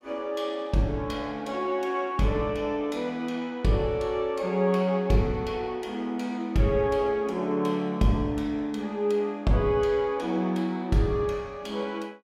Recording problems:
none

